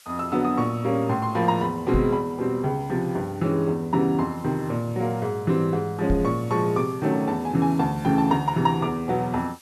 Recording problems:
background hiss; slope +3 dB per octave, SNR 27 dB
microphone bump; at 2 s and at 6 s; peak +2 dB vs average level

